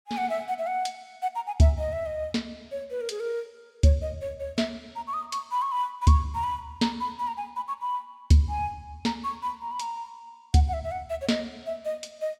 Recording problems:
none

